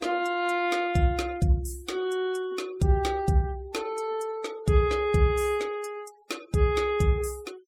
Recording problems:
denoising artefacts; signal-to-artefact ratio 23 dB

